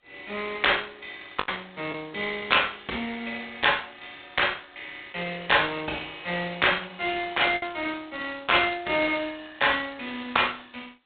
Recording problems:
phone line; 260 Hz to 3.8 kHz, G.726
lost packets; 1.7% of the sound replaced, filled with the last packet

